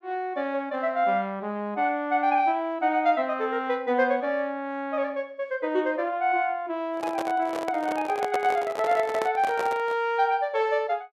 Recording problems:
microphone handling noise; from 7 to 10 s; peak 0 dB vs average level

